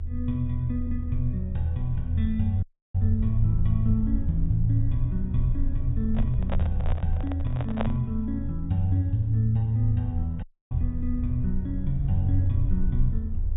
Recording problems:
treble cut off; nothing above 4 kHz
rumble; below 80 Hz, SNR 3 dB
dropout; at 2.5 s and at 10 s
microphone handling noise; from 6 to 8 s; peak +1 dB vs average level

